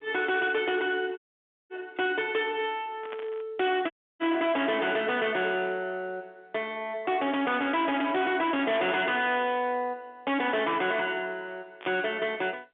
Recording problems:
telephone audio; 190 Hz to 3.5 kHz, G.711
distortion; hard clipping, signal-to-distortion ratio 7 dB
audio cutting out; at 1 s for 0.5 s and at 4 s
burst of static; at 3 s, at 9 s and at 12 s; peak -9 dB vs average level

